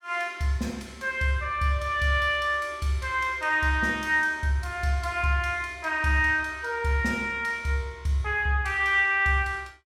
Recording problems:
none

